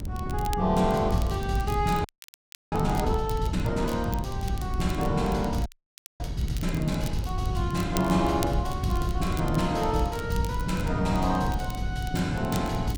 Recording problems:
wind noise; below 150 Hz, SNR 6 dB
crackle; vinyl, SNR 17 dB
audio freezing; at 2 s for 0.5 s and at 5.5 s for 0.5 s

